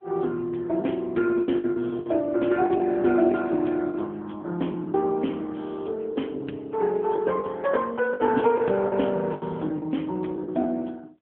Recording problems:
phone line; 150 Hz to 3.4 kHz, AMR-NB
packet loss; 8% of the sound replaced, filled with the last packet

